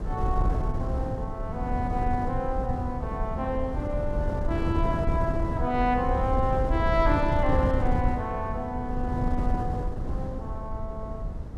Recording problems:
wind noise; below 130 Hz, SNR 0 dB

